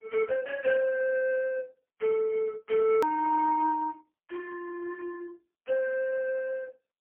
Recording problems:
telephone audio; 320 Hz to 2.7 kHz, AMR-NB, then MP3
click at an edit; at 3 s

